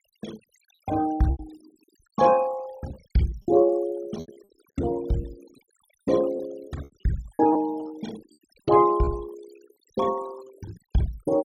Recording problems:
noise reduction artefacts; signal-to-artefact ratio 20 dB
packet loss; 7% of the sound replaced, filled with repeated pitch periods

